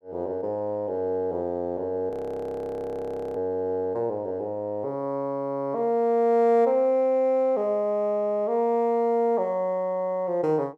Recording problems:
frozen audio; at 2 s for 1.5 s

